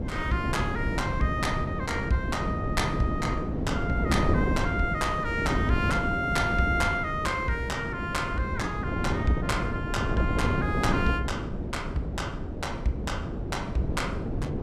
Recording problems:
wind on the microphone; below 320 Hz, SNR 1 dB

